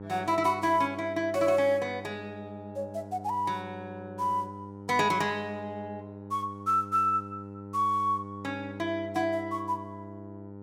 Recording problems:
hum; 50 Hz, harmonics up to 1.3 kHz, SNR 14 dB

